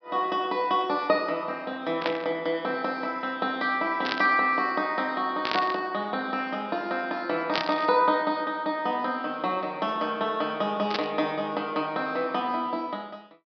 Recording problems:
treble cut off; nothing above 5.5 kHz
static burst; 5 times, first at 2 s; peak +3 dB vs average level

